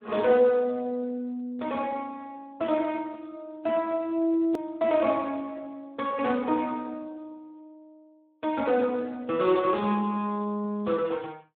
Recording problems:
phone line; 170 Hz to 3.5 kHz, Speex
hard cut with a click; at 4.5 s

